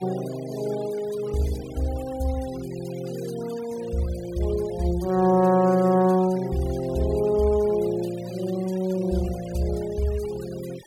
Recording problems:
noise reduction artefacts; signal-to-artefact ratio 20 dB

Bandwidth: 17 kHz